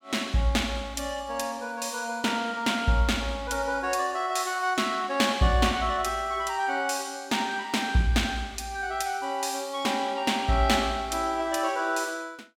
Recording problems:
none

